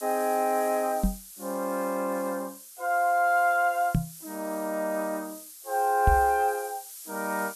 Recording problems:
hiss; slope +5 dB per octave, SNR 15 dB
knock on the microphone; at 1 s, at 4 s and at 6 s; peak +6 dB vs average level

